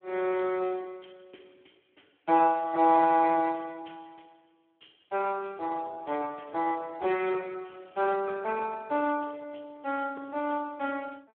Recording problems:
telephone audio; 240 Hz to 3.2 kHz, Speex

